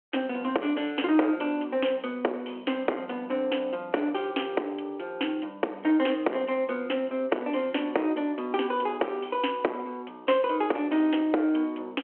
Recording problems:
telephone audio; 260 Hz to 3.3 kHz, G.726
distorted audio; soft clipping, signal-to-distortion ratio 13 dB

